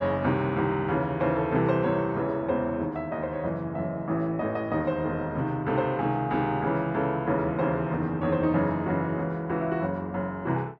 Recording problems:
none

